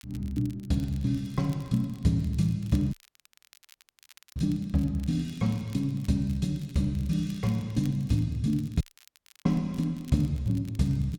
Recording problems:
crackling; vinyl, SNR 26 dB
dropout; at 3 s for 1.5 s and at 9 s for 0.5 s

